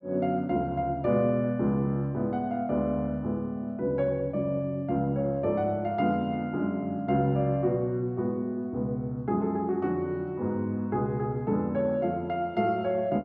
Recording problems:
none

